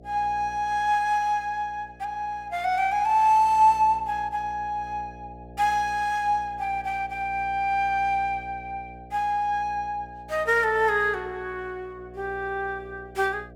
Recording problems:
hum; 60 Hz, harmonics up to 720 Hz, SNR 21 dB

